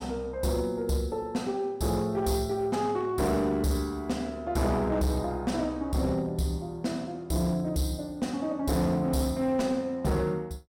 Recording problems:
distorted audio; hard clipping, uneven, signal-to-distortion ratio 11 dB

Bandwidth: 16.5 kHz